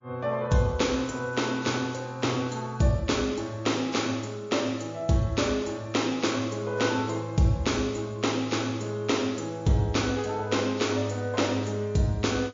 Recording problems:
lossy compression; MP3, log-spectral distance 4 dB

